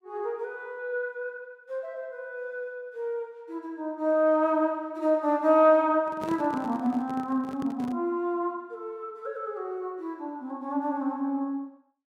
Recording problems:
handling noise; from 6 to 8 s; peak -6 dB vs average level

